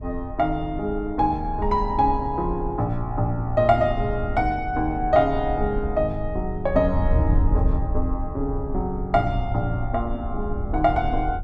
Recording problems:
wind noise; below 76 Hz, SNR 6 dB

